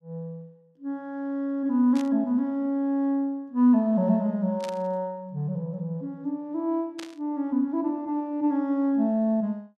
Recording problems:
burst of static; at 2 s, at 4.5 s and at 7 s; peak -9 dB vs average level

